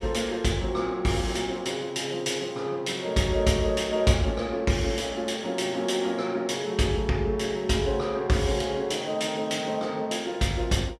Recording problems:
none

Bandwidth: 12.5 kHz